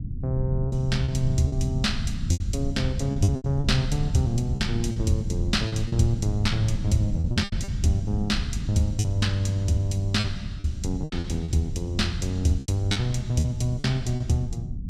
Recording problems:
low-frequency rumble; below 130 Hz, SNR 6 dB
lost packets; 9% of the sound replaced, filled with repeated pitch periods

